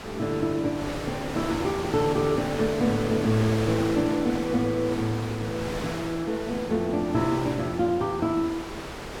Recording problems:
wind on the microphone; below 2.1 kHz, SNR 8 dB

